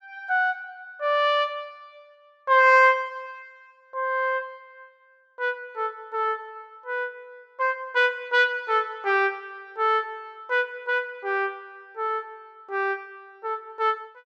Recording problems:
none

